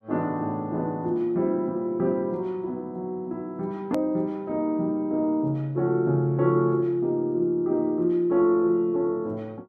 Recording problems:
click at an edit; at 4 s

